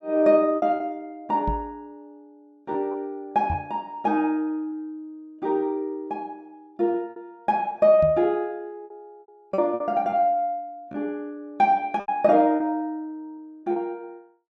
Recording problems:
lost packets; 5% of the sound replaced, filled with repeated pitch periods
microphone bump; at 1.5 s, at 3.5 s and at 8 s; peak -2 dB vs average level

